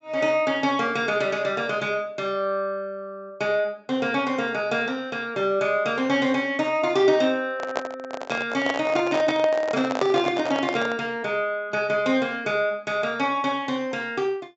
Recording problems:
low-pass filter; nothing above 7.7 kHz
microphone handling noise; from 7.5 to 11 s; peak +2 dB vs average level

